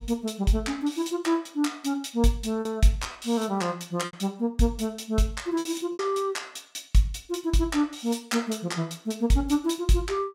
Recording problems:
packet loss; 3% of the sound replaced, filled with repeated pitch periods

